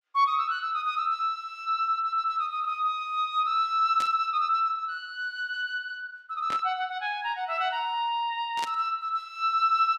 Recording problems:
burst of static; at 4 s, at 6.5 s and at 8.5 s; peak -4 dB vs average level

